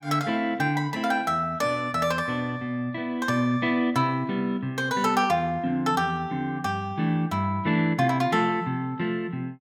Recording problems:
none

